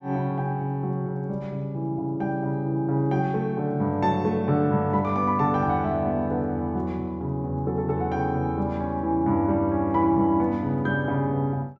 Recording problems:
none

